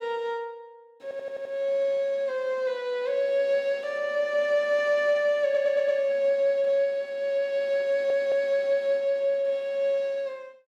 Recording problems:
stutter; at 1 s, at 5.5 s and at 8 s

